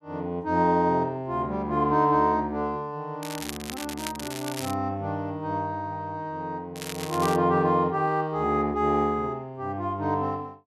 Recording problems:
crackling; from 3 to 4.5 s and at 7 s; loose cable, SNR 11 dB

